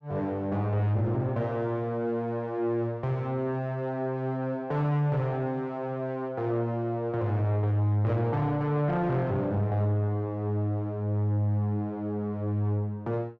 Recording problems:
distorted audio; soft clipping, signal-to-distortion ratio 10 dB

